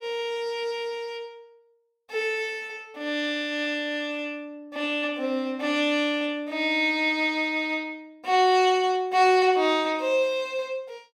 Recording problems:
none

